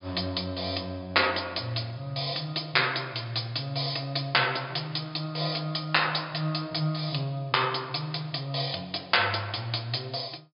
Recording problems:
treble missing; nothing above 5.2 kHz

